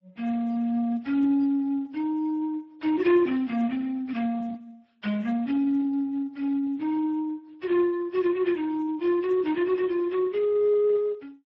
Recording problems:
lossy codec; MP3, then Speex, log-spectral distance 2 dB, nothing above 16.5 kHz

